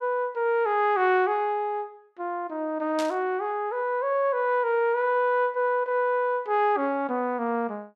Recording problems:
burst of static; at 3 s; peak -6 dB vs average level

